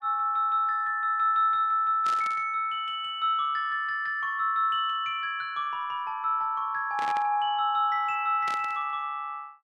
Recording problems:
static burst; at 2 s, at 7 s and at 8.5 s; peak -8 dB vs average level

